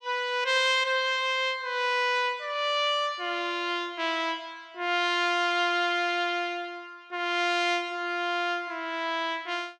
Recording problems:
none

